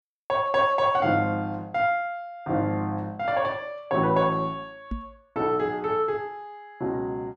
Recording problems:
microphone thump; at 5 s; peak -3 dB vs average level

